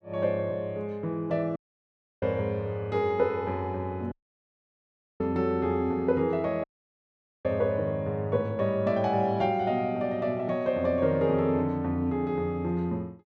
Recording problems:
dropout; at 1.5 s for 0.5 s, at 4 s for 1 s and at 6.5 s for 1 s

